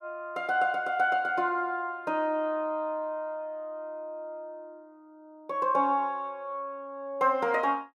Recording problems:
none

